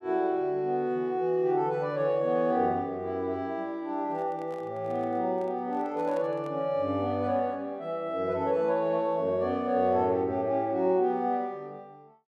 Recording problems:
microphone handling noise; from 4 to 6.5 s; peak -12 dB vs average level

